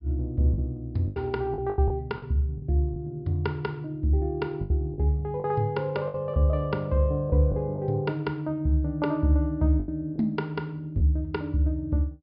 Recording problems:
treble missing; nothing above 5.5 kHz
packet loss; 6% of the sound replaced, filled with the last packet

